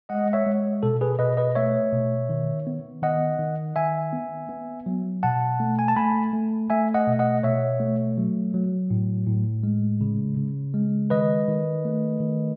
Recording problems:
none

